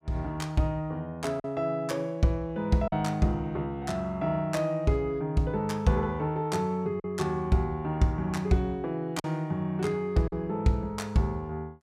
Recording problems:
packet loss; 1.7% of the sound replaced, filled with silence

